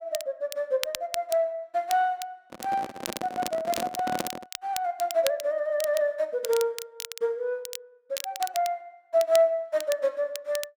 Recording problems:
crackling; vinyl, SNR 11 dB
microphone handling noise; from 2.5 to 4.5 s; peak +1 dB vs average level

